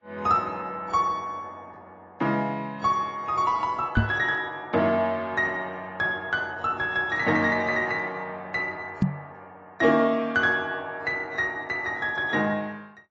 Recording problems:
lossy codec; AAC, log-spectral distance 2 dB
microphone thump; at 4 s and at 9 s; peak +7 dB vs average level

